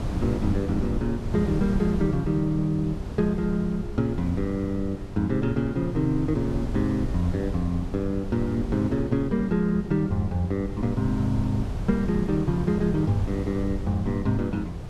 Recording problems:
wind on the microphone; below 150 Hz, SNR 8 dB

